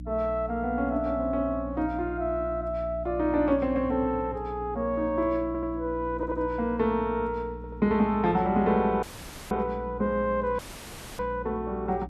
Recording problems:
electrical hum; 60 Hz, harmonics up to 300 Hz, SNR 13 dB
audio stuttering; at 5.5 s, at 6 s and at 7.5 s
audio cutting out; at 9 s and at 11 s for 0.5 s

